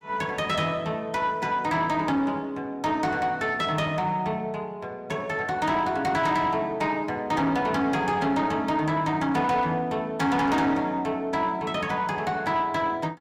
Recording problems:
distortion; soft clipping, signal-to-distortion ratio 11 dB

